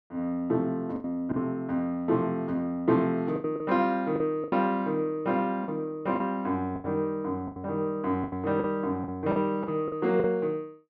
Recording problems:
lost packets; 9% of the sound replaced, filled with the last packet

